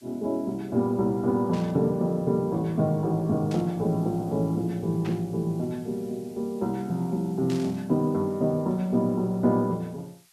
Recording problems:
hiss; slope +4 dB per octave, SNR 29 dB
burst of static; 4 times, first at 1.5 s; peak -11 dB vs average level

